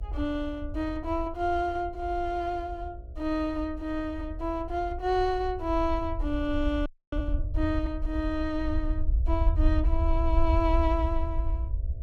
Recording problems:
electrical hum; 60 Hz, harmonics up to 660 Hz, SNR 26 dB
low-frequency rumble; below 68 Hz, SNR 2 dB
audio freezing; at 7 s

